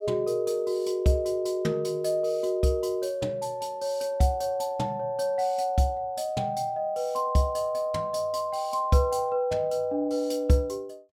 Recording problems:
none

